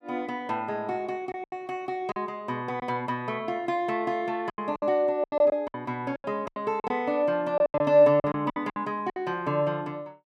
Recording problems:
lost packets; 10% of the sound replaced, filled with silence

